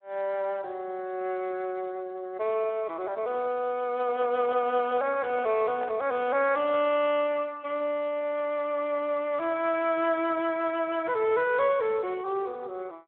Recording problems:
telephone audio; 340 Hz to 3.2 kHz, Speex
handling noise; from 4 to 6 s; peak -6 dB vs average level

